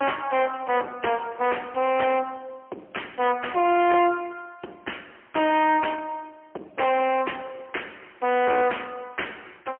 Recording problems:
phone line; 280 Hz to 3.2 kHz, AMR-NB, then MP3
distortion; hard clipping, signal-to-distortion ratio 8 dB

